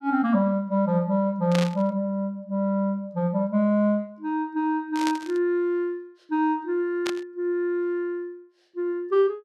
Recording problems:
static burst; at 1.5 s, at 5 s and at 7 s; peak -1 dB vs average level

